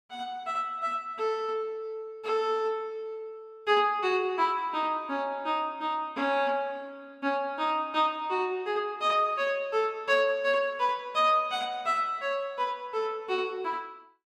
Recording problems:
none

